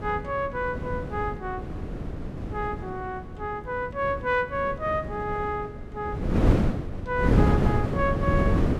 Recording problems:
wind noise; below 300 Hz, SNR -1 dB

